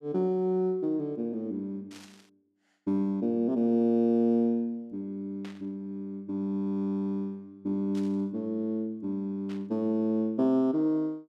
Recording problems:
static burst; 4 times, first at 2 s; peak -15 dB vs average level

